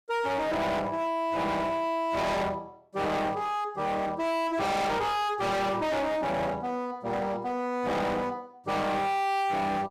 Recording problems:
distortion; hard clipping, signal-to-distortion ratio 6 dB

